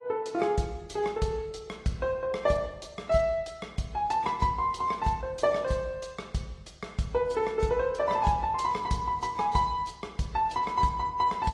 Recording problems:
codec artefacts; AAC, log-spectral distance 2 dB, nothing above 11 kHz

